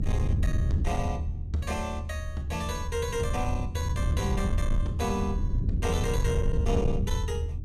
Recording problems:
distorted audio; soft clipping, signal-to-distortion ratio 11 dB
rumble; below 110 Hz, SNR -2 dB

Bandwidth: 14.5 kHz